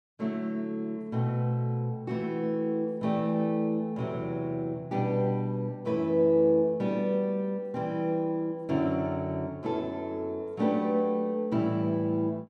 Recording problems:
none

